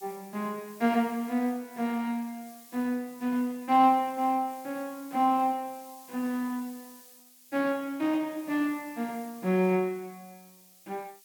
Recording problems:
background hiss; SNR 22 dB

